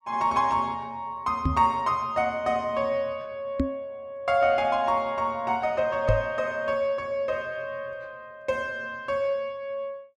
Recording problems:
microphone thump; at 1.5 s, at 3.5 s and at 6 s; peak +5 dB vs average level

